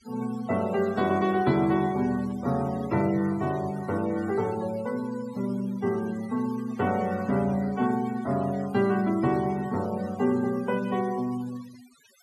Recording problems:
denoising artefacts; signal-to-artefact ratio 20 dB

